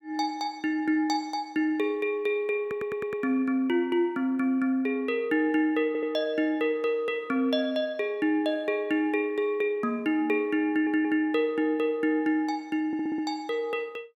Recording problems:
stutter; 4 times, first at 2.5 s

